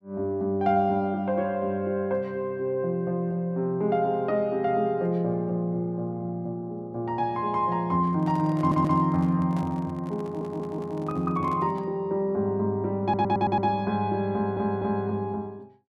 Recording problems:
handling noise; from 8 to 12 s; peak -11 dB vs average level
audio stuttering; 4 times, first at 8.5 s

